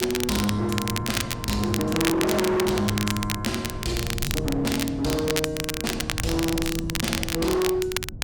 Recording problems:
distortion; hard clipping, signal-to-distortion ratio 7 dB
wind noise; below 180 Hz, SNR 10 dB
crackle; vinyl, SNR 4 dB

